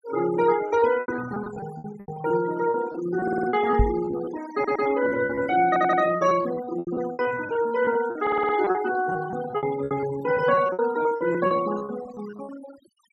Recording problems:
noise reduction artefacts; signal-to-artefact ratio 13 dB
packet loss; 17% of the sound replaced, filled with repeated pitch periods
stutter; 4 times, first at 3 s
microphone bump; at 4 s; peak +5 dB vs average level

